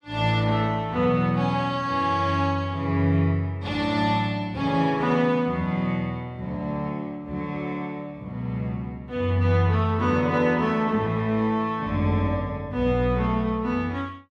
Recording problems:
none

